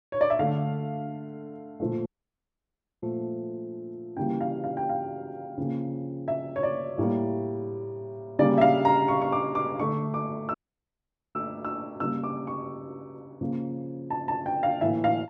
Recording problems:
dropout; at 2 s for 1 s and at 11 s for 1 s

